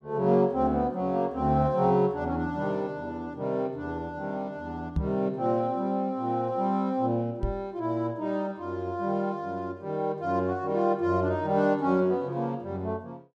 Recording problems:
microphone thump; at 5 s and at 7.5 s; peak +3 dB vs average level

